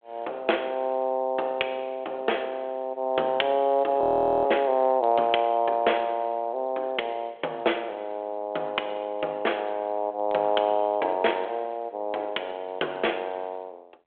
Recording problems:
telephone audio; 320 Hz to 3.4 kHz, G.726
frozen audio; at 4 s

